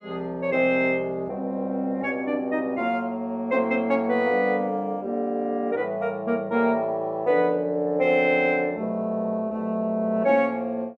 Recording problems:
none

